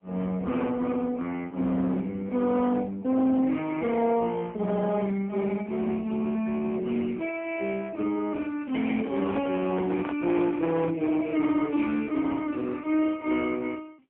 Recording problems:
phone line; 150 Hz to 3.5 kHz, AMR-NB, then MP3
distortion; hard clipping, uneven, signal-to-distortion ratio 11 dB
microphone handling noise; from 9 to 11 s; peak -4 dB vs average level

